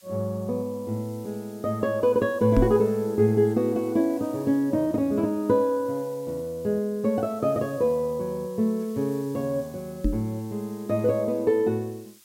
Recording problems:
hiss; slope +2 dB per octave, SNR 26 dB
microphone thump; at 2.5 s and at 10 s; peak +6 dB vs average level

